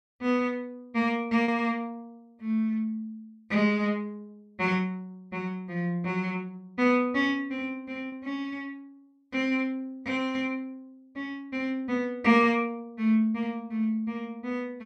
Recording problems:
packet loss; 0.6% of the sound replaced, filled with repeated pitch periods

